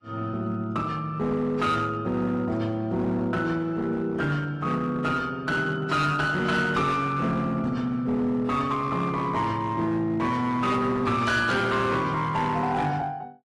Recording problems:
codec artefacts; AAC, log-spectral distance 2 dB, nothing above 11.3 kHz
distorted audio; hard clipping, uneven, signal-to-distortion ratio 12 dB

